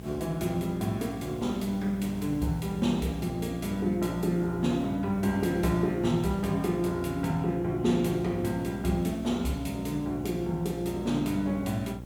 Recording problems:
hum; 60 Hz, harmonics up to 840 Hz, SNR 13 dB
hiss; SNR 23 dB

